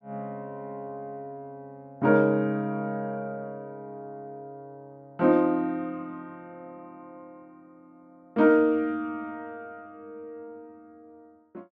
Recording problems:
none

